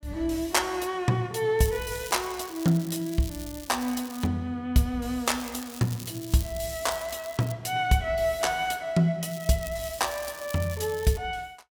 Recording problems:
crackle; from 1.5 to 4.5 s, from 5.5 to 7.5 s and from 9 to 11 s; loose cable, SNR 15 dB

